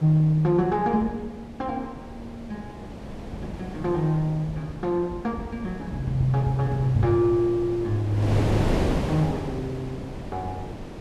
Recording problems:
wind on the microphone; below 520 Hz, SNR 8 dB

